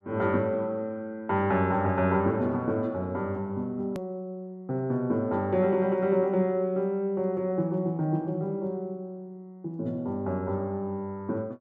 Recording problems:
edit click; at 4 s

